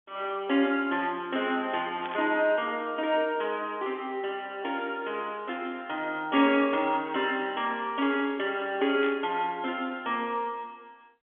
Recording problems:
telephone audio; 190 Hz to 3.5 kHz, G.711
burst of static; at 2 s and at 9 s; peak -7 dB vs average level

